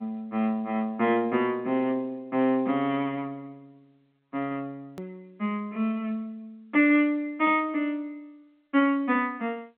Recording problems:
phone line; 170 Hz to 3.4 kHz, G.711
click at an edit; at 5 s

